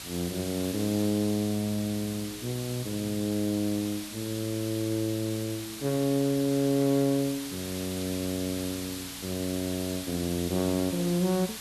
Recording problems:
hum; 60 Hz, harmonics up to 840 Hz, SNR 24 dB
background hiss; slope +2 dB per octave, SNR 9 dB

